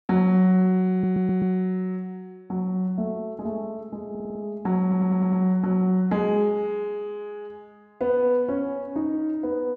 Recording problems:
stutter; at 1 s, at 4 s and at 5 s

